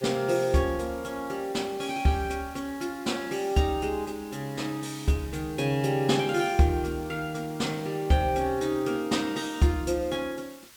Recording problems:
hiss; slope +1 dB per octave, SNR 21 dB

